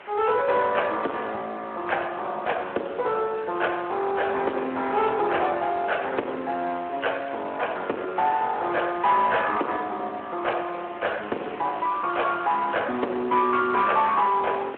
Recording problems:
telephone audio; 260 Hz to 3.1 kHz, Speex
distortion; soft clipping, signal-to-distortion ratio 11 dB
background hiss; SNR 18 dB

